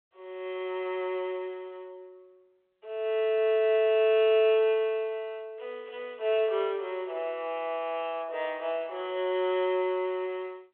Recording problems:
phone line; 320 Hz to 3.5 kHz, G.726

